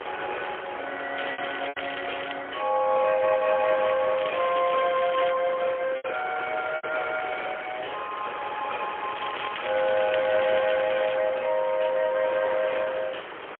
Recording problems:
phone line; 300 Hz to 3.3 kHz, AMR-NB, then MP3
wind on the microphone; below 2.2 kHz, SNR 9 dB
lost packets; 2% of the sound replaced, filled with repeated pitch periods
crackling; from 1 to 2.5 s, from 4 to 5.5 s and from 9 to 11 s; loose cable, SNR 11 dB

